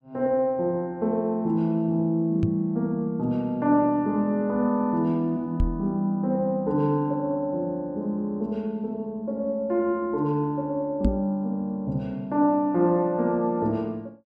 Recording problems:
microphone thump; at 2.5 s, at 5.5 s and at 11 s; peak +4 dB vs average level

